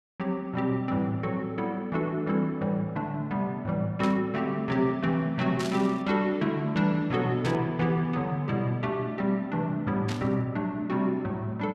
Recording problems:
static burst; 4 times, first at 4 s; peak -5 dB vs average level

